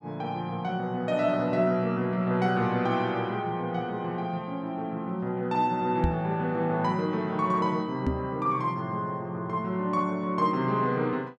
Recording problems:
microphone bump; at 6 s and at 8 s; peak +5 dB vs average level

